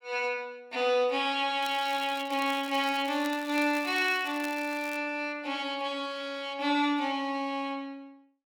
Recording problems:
crackling; from 1.5 to 5 s; loose cable, SNR 16 dB

